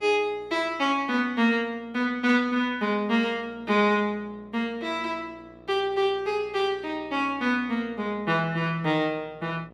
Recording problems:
hum; 60 Hz, harmonics up to 2 kHz, SNR 27 dB

